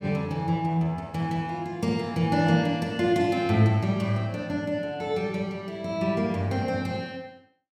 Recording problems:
none

